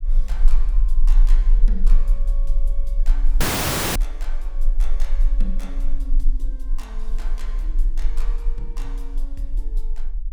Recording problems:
low-frequency rumble; below 32 Hz, strongest tone 18 Hz, SNR -17 dB
audio cutting out; at 3.5 s for 0.5 s

